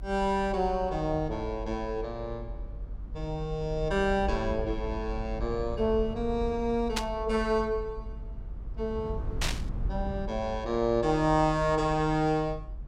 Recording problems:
low-frequency rumble; below 72 Hz, SNR 10 dB
static burst; at 7 s and at 9.5 s; peak +3 dB vs average level

